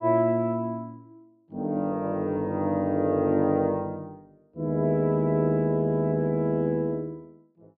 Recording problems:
none

